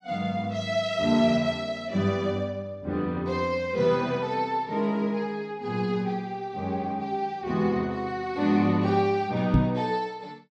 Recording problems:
knock on the microphone; at 9.5 s; peak +8 dB vs average level

